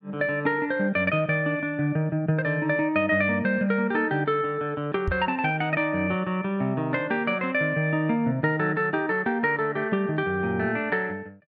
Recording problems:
knock on the microphone; at 5 s; peak 0 dB vs average level

